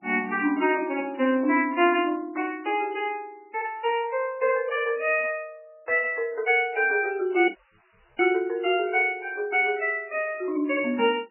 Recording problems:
lossy codec; MP3, log-spectral distance 4 dB, nothing above 2.5 kHz
dropout; at 7.5 s for 0.5 s

